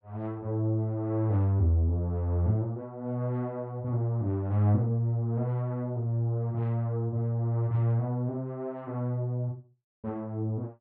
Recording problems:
none

